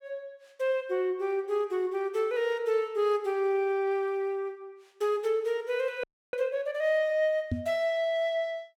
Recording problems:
frozen audio; at 6 s
microphone thump; at 7.5 s; peak +2 dB vs average level

